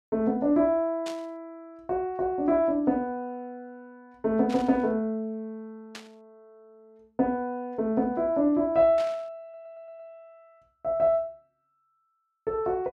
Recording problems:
static burst; 4 times, first at 1 s; peak -9 dB vs average level
stutter; at 9.5 s

